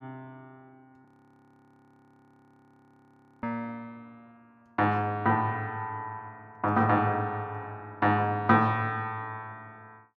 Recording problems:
frozen audio; at 1 s for 2.5 s

